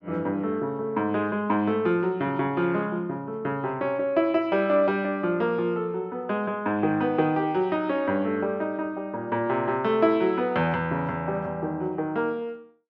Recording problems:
none

